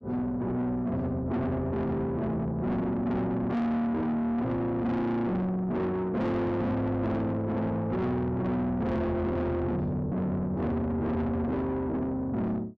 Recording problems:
distortion; soft clipping, signal-to-distortion ratio 8 dB

